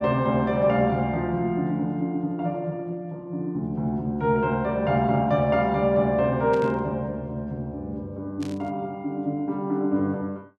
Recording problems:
burst of static; at 6.5 s and at 8.5 s; peak -12 dB vs average level

